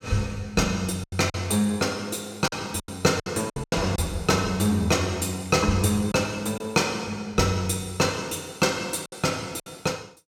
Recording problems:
lost packets; 6% of the sound replaced, filled with silence

